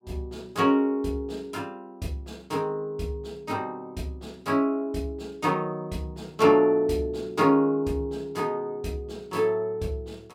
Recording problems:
none

